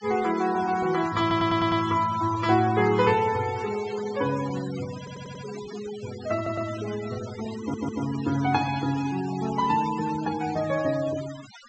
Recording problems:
low-pass filter; nothing above 8 kHz
noise reduction artefacts; signal-to-artefact ratio 14 dB
stutter; 4 times, first at 1 s

